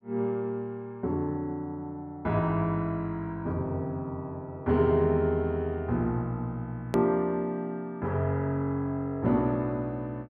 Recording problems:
edit click; at 7 s

